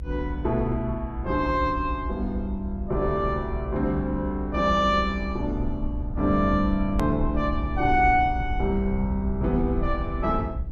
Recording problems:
low-frequency rumble; below 68 Hz, SNR 6 dB
click at an edit; at 7 s

